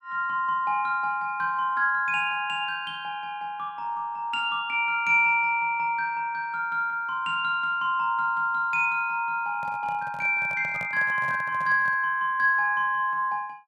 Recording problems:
handling noise; from 9.5 to 12 s; peak -11 dB vs average level

